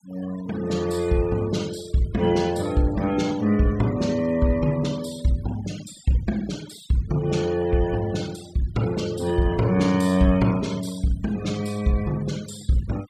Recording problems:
denoising artefacts; signal-to-artefact ratio 19 dB

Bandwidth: 14.5 kHz